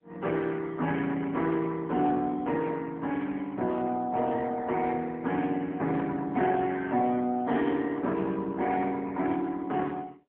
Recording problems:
phone line; 190 Hz to 3.8 kHz, AMR-NB

